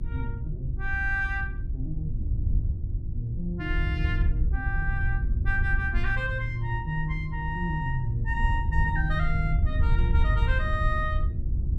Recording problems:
electrical hum; 50 Hz, harmonics up to 350 Hz, SNR 11 dB
low-frequency rumble; below 78 Hz, SNR -2 dB

